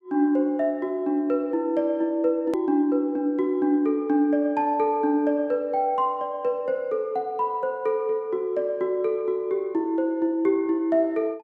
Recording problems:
click at an edit; at 2.5 s

